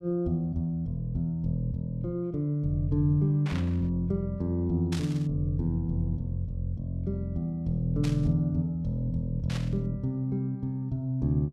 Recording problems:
static burst; 4 times, first at 3.5 s; peak -6 dB vs average level

